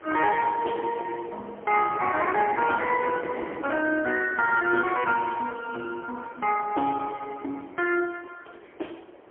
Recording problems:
phone line; 280 Hz to 3.2 kHz, AMR-NB, then MP3
wind on the microphone; below 810 Hz, SNR 16 dB

